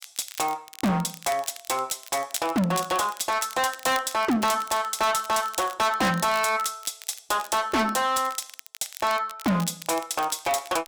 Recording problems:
distorted audio; hard clipping, signal-to-distortion ratio 6 dB
crackle; vinyl, SNR 16 dB

